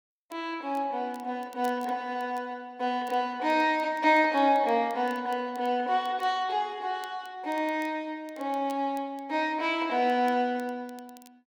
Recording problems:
crackle; vinyl, SNR 28 dB

